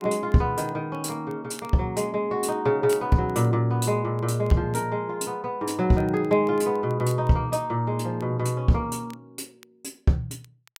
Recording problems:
crackling; vinyl, SNR 29 dB

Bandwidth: 16 kHz